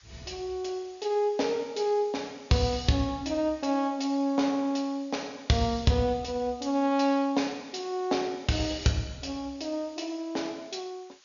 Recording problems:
treble missing; nothing above 7 kHz
hiss; slope +3 dB per octave, SNR 27 dB

